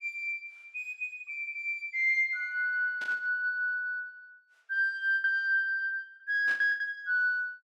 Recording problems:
lost packets; 4% of the sound replaced, filled with the last packet
static burst; at 3 s and at 6.5 s; peak -11 dB vs average level

